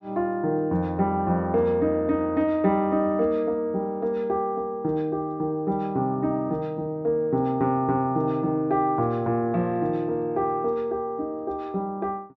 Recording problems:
low-pass filter; nothing above 8 kHz

